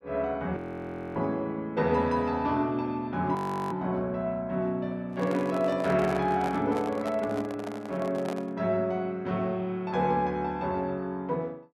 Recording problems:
audio freezing; at 0.5 s for 0.5 s and at 3.5 s
microphone handling noise; from 5 to 8.5 s; peak -3 dB vs average level

